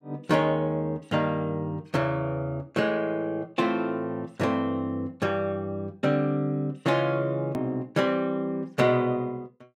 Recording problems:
click at an edit; at 7.5 s

